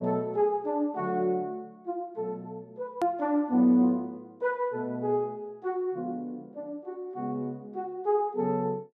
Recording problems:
hard cut with a click; at 3 s

